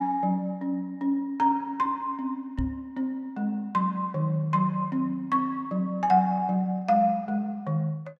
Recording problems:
microphone bump; at 2.5 s; peak -1 dB vs average level

